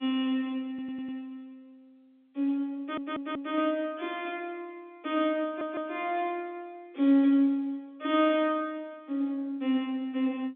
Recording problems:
telephone audio; 220 Hz to 3.7 kHz, G.711
audio stuttering; at 0.5 s, at 3 s and at 5.5 s

